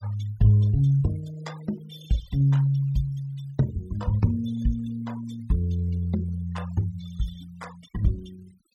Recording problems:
denoising artefacts; signal-to-artefact ratio 21 dB

